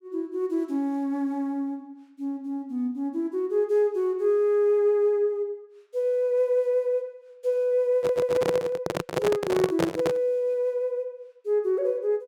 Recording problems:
audio stuttering; at 8 s
handling noise; from 8 to 10 s; peak +4 dB vs average level

